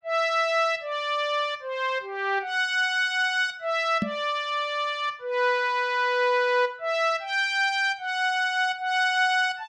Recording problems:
microphone bump; at 4 s; peak +1 dB vs average level

